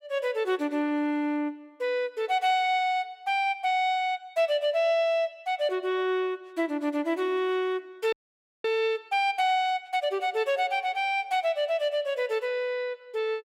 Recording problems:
audio freezing; at 8 s for 0.5 s

